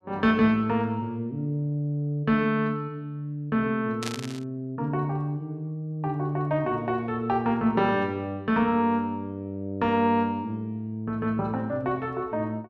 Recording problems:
burst of static; at 4 s; peak -2 dB vs average level

